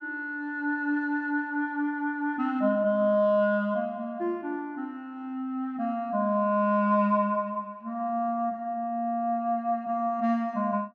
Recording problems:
none

